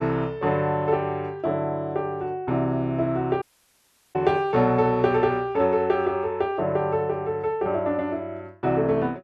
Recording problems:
audio cutting out; at 3.5 s for 0.5 s

